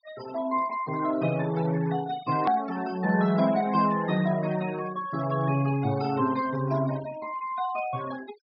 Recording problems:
low-pass filter; nothing above 5.5 kHz
denoising artefacts; signal-to-artefact ratio 17 dB
hard cut with a click; at 2.5 s

